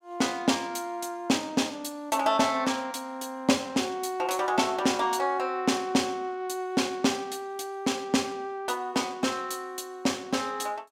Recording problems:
none

